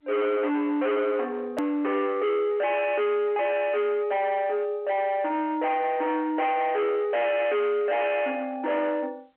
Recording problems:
phone line; 280 Hz to 3.4 kHz, G.711
distorted audio; hard clipping, signal-to-distortion ratio 8 dB
edit click; at 1.5 s

